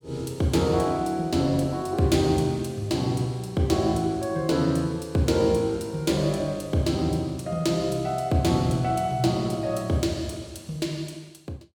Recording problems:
none

